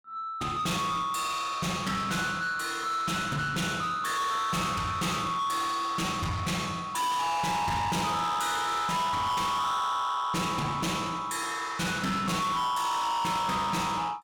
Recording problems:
distorted audio; soft clipping, signal-to-distortion ratio 7 dB

